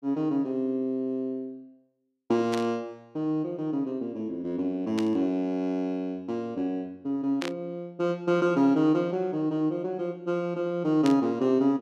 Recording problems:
static burst; 4 times, first at 2.5 s; peak -3 dB vs average level

